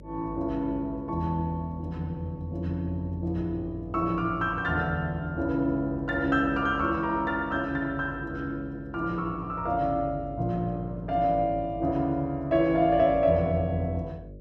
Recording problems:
hum; 50 Hz, harmonics up to 600 Hz, SNR 17 dB

